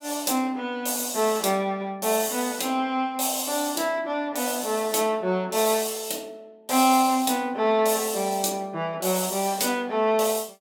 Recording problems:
none

